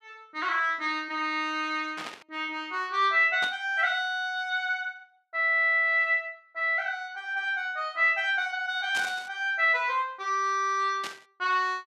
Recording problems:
static burst; 4 times, first at 2 s; peak -5 dB vs average level

